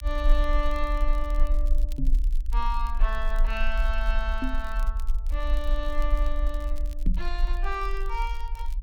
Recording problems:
low-frequency rumble; below 44 Hz, strongest tone 24 Hz, SNR -4 dB
crackle; vinyl, SNR 21 dB
microphone thump; at 2 s, at 4.5 s and at 7 s; peak +6 dB vs average level

